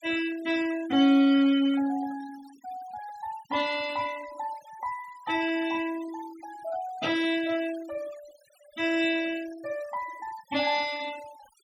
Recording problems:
denoising artefacts; signal-to-artefact ratio 18 dB

